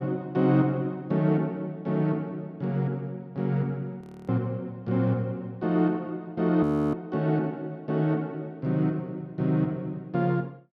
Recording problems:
audio freezing; at 4 s and at 6.5 s

